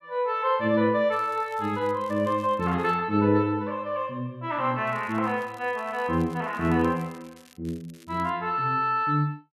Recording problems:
crackle; from 1 to 3 s, from 5 to 7.5 s and at 7.5 s; loose cable, SNR 28 dB

